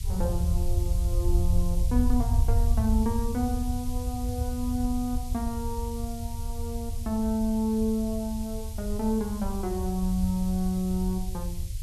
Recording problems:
hiss; SNR 14 dB
rumble; below 80 Hz, SNR 1 dB

